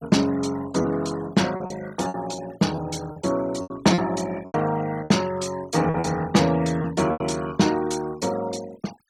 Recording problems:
noise reduction artefacts; signal-to-artefact ratio 18 dB
packet loss; 8% of the sound replaced, filled with repeated pitch periods

